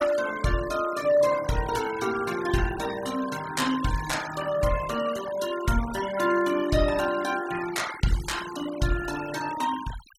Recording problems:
denoising artefacts; signal-to-artefact ratio 13 dB

